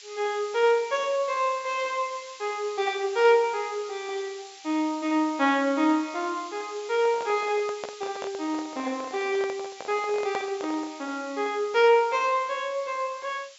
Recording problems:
treble missing; nothing above 8 kHz
hiss; SNR 18 dB
microphone handling noise; from 7 to 11 s; peak -3 dB vs average level

